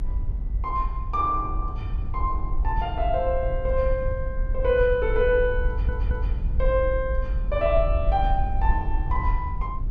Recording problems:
low-frequency rumble; below 62 Hz, SNR 2 dB
stutter; at 5.5 s

